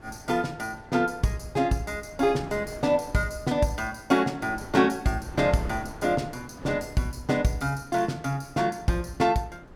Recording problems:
wind on the microphone; below 550 Hz, SNR 18 dB

